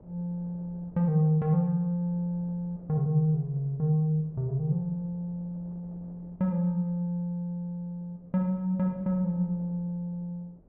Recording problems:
wind noise; below 410 Hz, SNR 26 dB

